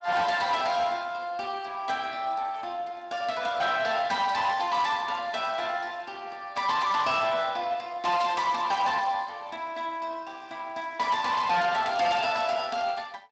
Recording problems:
lossy compression; Speex, log-spectral distance 4 dB, nothing above 7.3 kHz
distortion; hard clipping, signal-to-distortion ratio 11 dB

